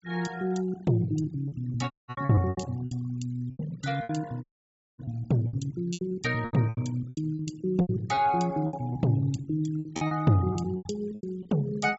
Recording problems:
treble cut off; nothing above 8 kHz
denoising artefacts; signal-to-artefact ratio 21 dB
packet loss; 14% of the sound replaced, filled with repeated pitch periods
dropout; at 2 s and at 4.5 s for 0.5 s

